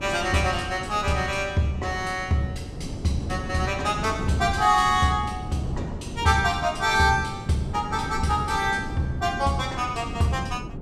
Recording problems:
wind noise; below 270 Hz, SNR 10 dB

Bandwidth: 15 kHz